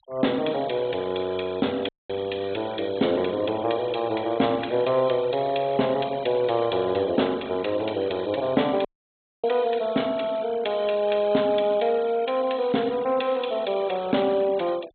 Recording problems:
treble cut off; nothing above 4 kHz
noise reduction artefacts; signal-to-artefact ratio 22 dB
audio cutting out; at 2 s and at 9 s for 0.5 s

